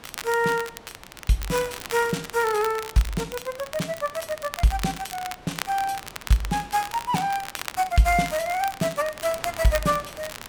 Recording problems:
wind noise; below 2.3 kHz, SNR 20 dB
crackling; vinyl, SNR 12 dB

